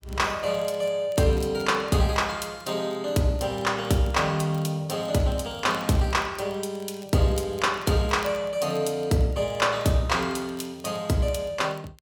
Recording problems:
crackling; vinyl, SNR 27 dB

